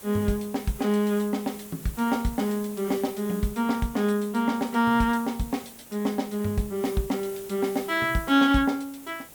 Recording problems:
background hiss; slope -3 dB per octave, SNR 17 dB

